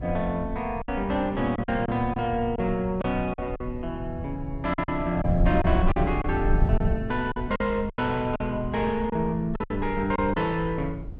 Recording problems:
wind on the microphone; below 96 Hz, SNR 6 dB
packet loss; 8% of the sound replaced, filled with silence

